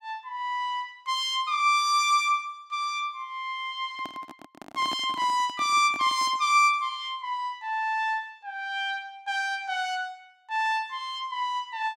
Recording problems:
microphone handling noise; from 4 to 6.5 s; peak -7 dB vs average level

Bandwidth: 16 kHz